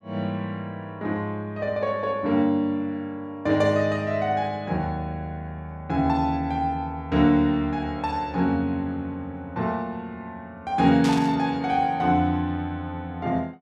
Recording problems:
static burst; at 11 s; peak -4 dB vs average level

